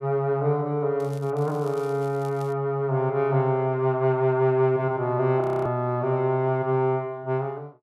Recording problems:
crackle; at 1 s and from 1.5 to 2.5 s; loose cable, SNR 27 dB
frozen audio; at 5.5 s

